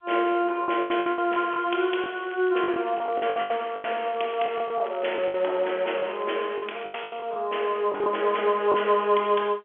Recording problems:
telephone audio; 300 Hz to 3.3 kHz, G.711
packet loss; 12% of the sound replaced, filled with the last packet
crackling; from 1.5 to 2.5 s and from 3 to 7 s; loose cable, SNR 21 dB

